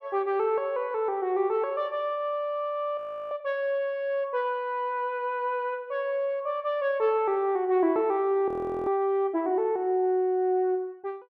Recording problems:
frozen audio; at 3 s and at 8.5 s

